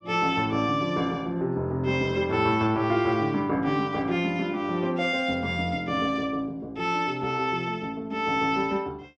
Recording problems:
none

